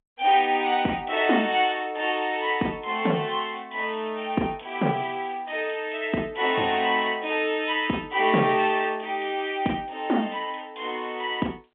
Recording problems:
phone line; 170 Hz to 3.5 kHz, G.711

